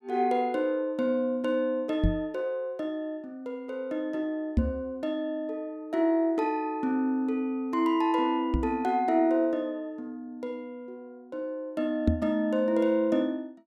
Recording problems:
microphone bump; 4 times, first at 2 s; peak +8 dB vs average level

